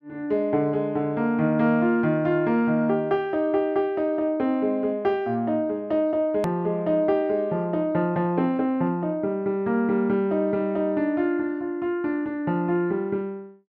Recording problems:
edit click; at 6.5 s

